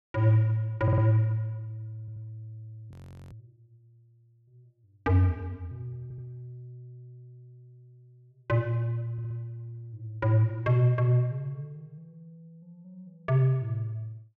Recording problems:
audio stuttering; 4 times, first at 1 s
audio freezing; at 3 s

